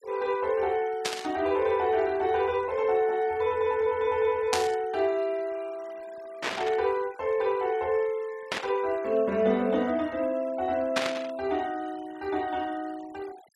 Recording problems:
noise reduction artefacts; signal-to-artefact ratio 23 dB
static burst; 5 times, first at 1 s; peak +4 dB vs average level

